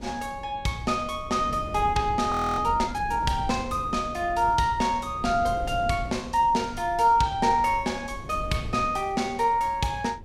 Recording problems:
wind on the microphone; below 220 Hz, SNR 14 dB
frozen audio; at 2.5 s

